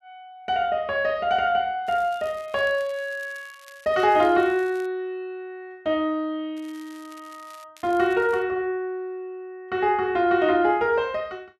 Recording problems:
crackling; from 2 to 5 s, from 6.5 to 7.5 s and at 8 s; loose cable, SNR 27 dB

